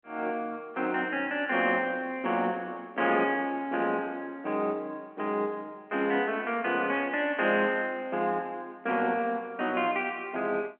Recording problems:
telephone audio; 240 Hz to 3.2 kHz, G.711

